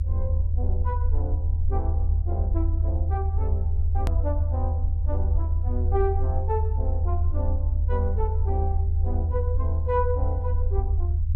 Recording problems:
low-frequency rumble; below 80 Hz, SNR -8 dB
hard cut with a click; at 4 s

